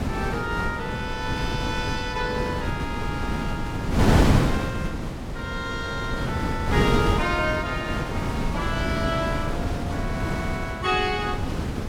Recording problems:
wind on the microphone; below 370 Hz, SNR -2 dB

